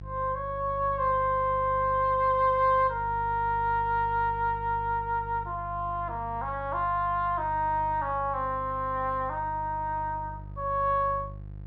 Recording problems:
electrical hum; 50 Hz, harmonics up to 500 Hz, SNR 14 dB

